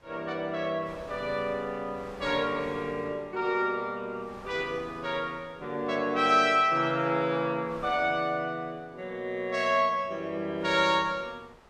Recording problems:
wind noise; below 1.4 kHz, SNR 23 dB

